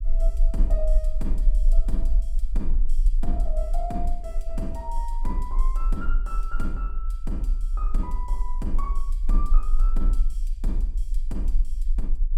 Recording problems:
rumble; below 36 Hz, strongest tone 20 Hz, SNR -8 dB

